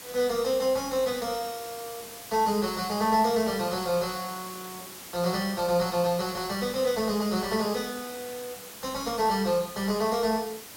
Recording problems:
hiss; slope -1 dB per octave, SNR 13 dB

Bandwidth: 16.5 kHz